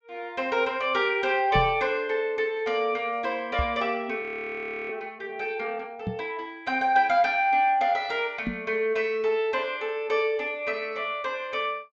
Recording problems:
treble missing; nothing above 8 kHz
knock on the microphone; 4 times, first at 1.5 s; peak 0 dB vs average level
frozen audio; at 4 s for 0.5 s

